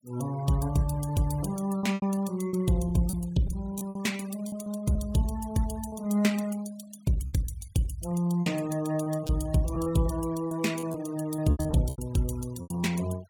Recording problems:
noise reduction artefacts; signal-to-artefact ratio 20 dB
packet loss; 8% of the sound replaced, filled with repeated pitch periods

